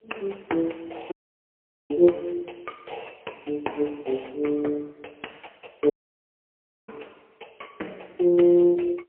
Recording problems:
phone line; 260 Hz to 3.4 kHz, AMR-NB, then MP3
audio cutting out; at 1 s for 1 s and at 6 s for 1 s

